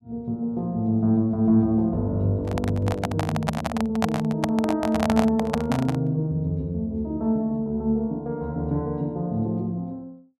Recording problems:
microphone handling noise; from 2.5 to 6 s; peak +4 dB vs average level

